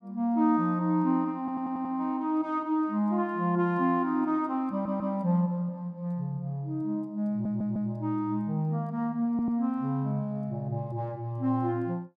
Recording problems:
audio stuttering; 4 times, first at 1.5 s

